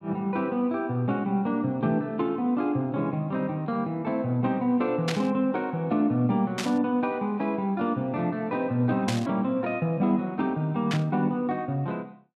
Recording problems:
burst of static; 4 times, first at 5 s; peak +1 dB vs average level

